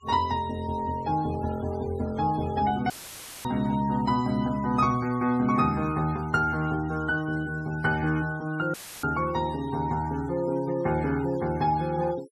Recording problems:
noise reduction artefacts; signal-to-artefact ratio 22 dB
dropout; at 3 s for 0.5 s and at 8.5 s; filled with static

